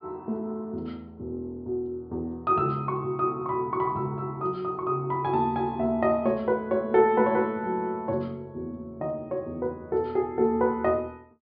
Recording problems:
treble cut off; nothing above 5.5 kHz

